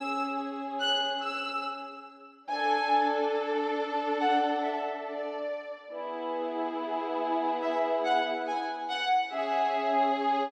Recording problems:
none

